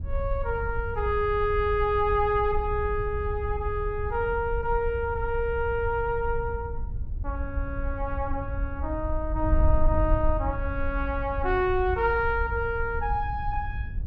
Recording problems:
wind on the microphone; below 72 Hz, SNR 5 dB

